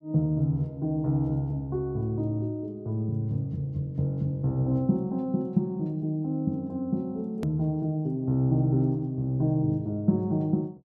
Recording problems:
edit click; at 7.5 s

